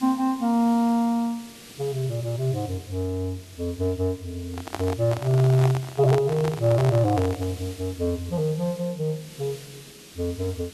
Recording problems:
background hiss; SNR 19 dB
microphone handling noise; from 4.5 to 7.5 s; peak 0 dB vs average level

